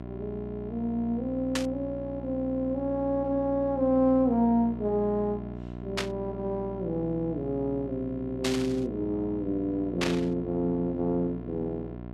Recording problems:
mains hum; 60 Hz, harmonics up to 1.4 kHz, SNR 10 dB
burst of static; 4 times, first at 1.5 s; peak +3 dB vs average level

